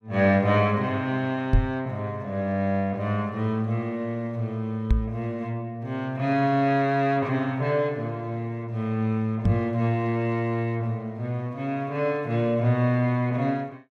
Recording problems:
microphone thump; at 1.5 s, at 5 s and at 9.5 s; peak +8 dB vs average level

